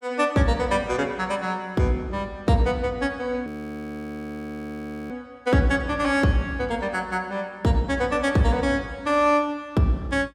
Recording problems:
audio freezing; at 3.5 s for 1.5 s

